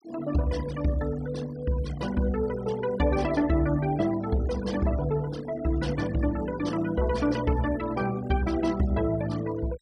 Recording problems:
denoising artefacts; signal-to-artefact ratio 18 dB

